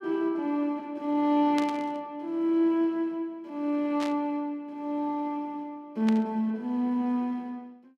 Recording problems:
burst of static; at 1.5 s, at 4 s and at 6 s; peak -4 dB vs average level

